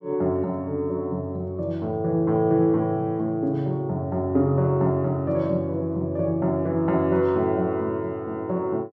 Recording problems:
none

